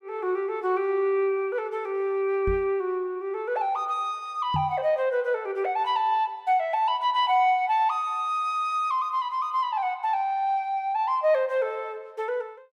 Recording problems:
knock on the microphone; at 2.5 s and at 4.5 s; peak -1 dB vs average level

